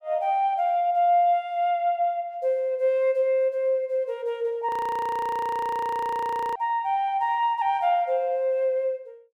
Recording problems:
frozen audio; at 4.5 s for 2 s

